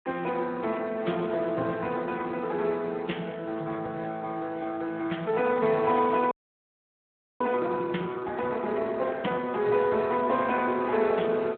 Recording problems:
phone line; 150 Hz to 3.5 kHz, Speex
audio freezing; at 6.5 s for 1 s

